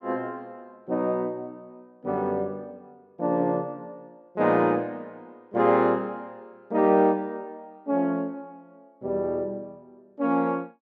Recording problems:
none

